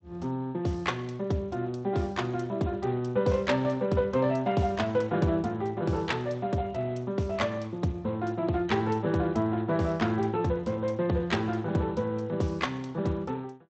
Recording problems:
lossy codec; Speex, log-spectral distance 3 dB, nothing above 7.3 kHz

